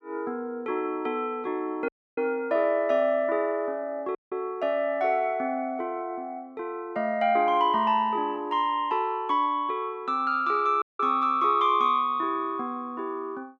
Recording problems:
dropout; at 2 s, at 4 s and at 11 s

